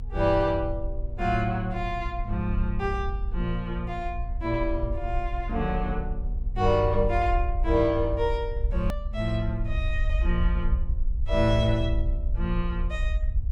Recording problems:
hum; 60 Hz, harmonics up to 960 Hz, SNR 19 dB
rumble; below 60 Hz, SNR 3 dB
click at an edit; at 9 s

